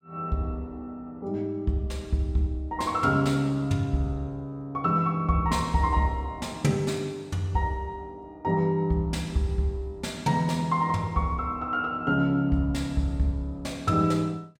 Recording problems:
none

